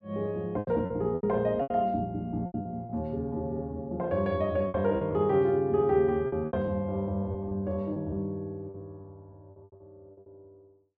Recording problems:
packet loss; 11% of the sound replaced, filled with repeated pitch periods

